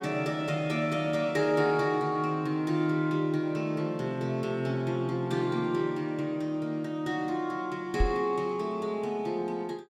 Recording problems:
microphone bump; at 8 s; peak +5 dB vs average level

